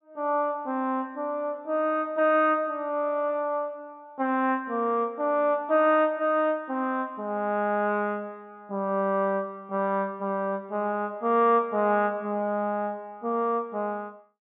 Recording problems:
treble cut off; nothing above 4 kHz

